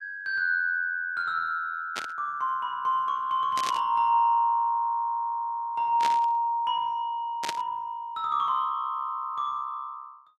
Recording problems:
static burst; 4 times, first at 2 s; peak 0 dB vs average level

